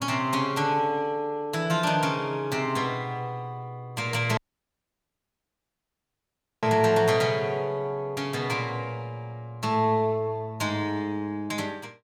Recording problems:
dropout; at 4.5 s for 2.5 s

